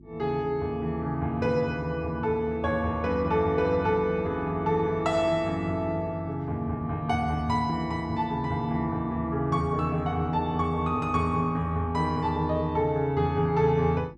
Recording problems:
hum; 50 Hz, harmonics up to 350 Hz, SNR 22 dB

